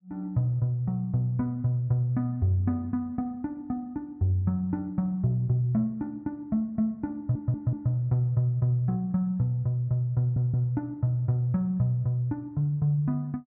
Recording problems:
audio stuttering; at 7 s and at 10 s

